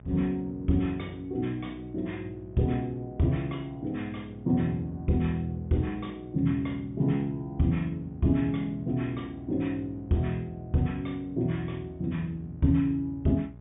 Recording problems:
low-pass filter; nothing above 3.6 kHz
electrical hum; 60 Hz, harmonics up to 840 Hz, SNR 19 dB

